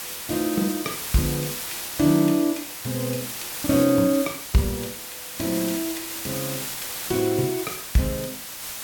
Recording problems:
hiss; slope +1 dB per octave, SNR 6 dB

